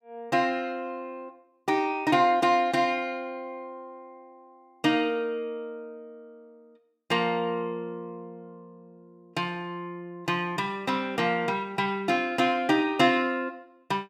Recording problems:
none

